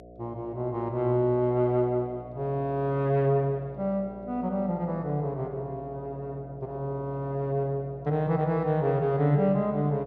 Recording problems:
hum; 60 Hz, harmonics up to 720 Hz, SNR 18 dB

